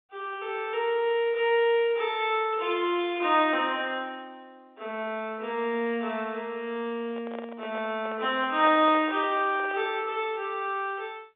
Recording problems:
telephone audio; 280 Hz to 3.7 kHz, G.711
microphone handling noise; from 7 to 10 s; peak -9 dB vs average level

